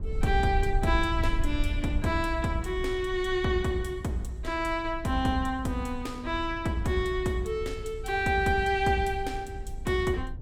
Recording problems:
rumble; below 70 Hz, SNR 8 dB

